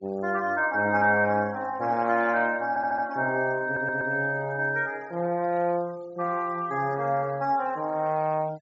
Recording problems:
low-pass filter; nothing above 8 kHz
noise reduction artefacts; signal-to-artefact ratio 25 dB
audio stuttering; at 2.5 s and at 3.5 s

